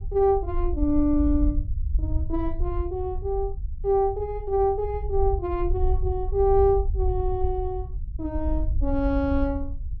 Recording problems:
rumble; below 66 Hz, SNR 4 dB

